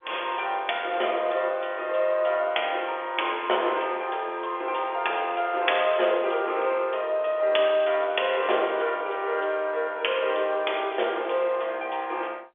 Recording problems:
telephone audio; 340 Hz to 3.5 kHz, G.711

